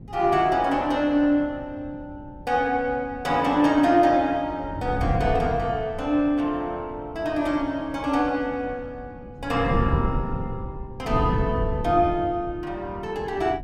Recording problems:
wind noise; below 190 Hz, SNR 8 dB

